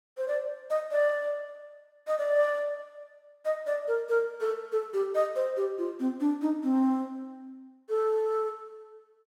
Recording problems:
none

